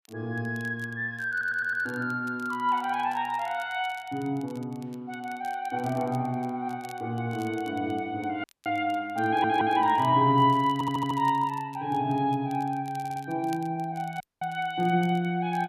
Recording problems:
crackle; vinyl, SNR 27 dB
audio stuttering; 4 times, first at 1.5 s
audio cutting out; at 8.5 s and at 14 s

